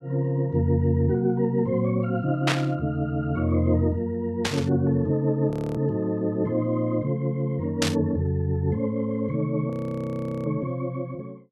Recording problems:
burst of static; at 2.5 s, at 4.5 s and at 8 s; peak +4 dB vs average level
audio freezing; at 5.5 s and at 9.5 s for 1 s

